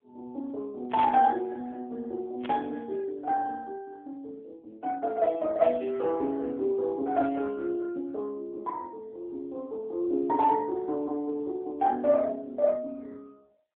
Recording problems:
telephone audio; 260 Hz to 3.4 kHz, AMR-NB
burst of static; at 1 s and at 2.5 s; peak -3 dB vs average level

